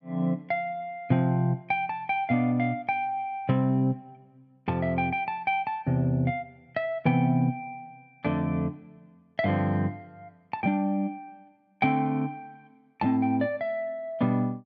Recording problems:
none

